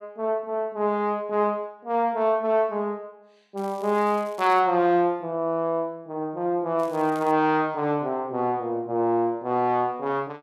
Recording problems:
crackling; from 3.5 to 4.5 s and at 7 s; loose cable, SNR 26 dB

